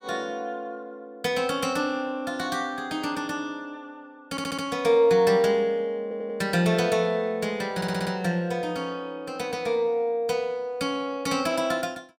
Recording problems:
stutter; at 4.5 s, at 6 s and at 8 s

